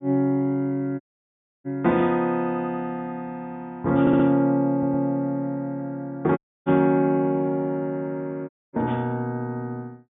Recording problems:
treble cut off; nothing above 4 kHz
audio cutting out; at 1 s for 0.5 s, at 6.5 s and at 8.5 s
audio stuttering; at 4 s and at 4.5 s

